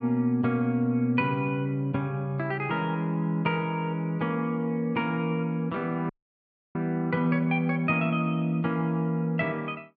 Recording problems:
audio cutting out; at 6 s for 0.5 s

